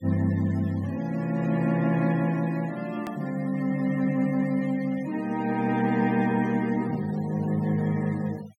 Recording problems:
noise reduction artefacts; signal-to-artefact ratio 23 dB
edit click; at 3 s

